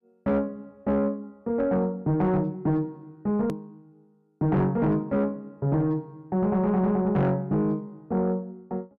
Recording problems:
distortion; soft clipping, signal-to-distortion ratio 11 dB
edit click; at 3.5 s

